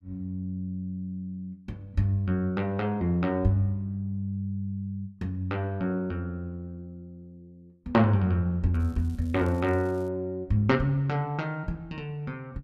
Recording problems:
crackle; from 8.5 to 10 s; loose cable, SNR 30 dB

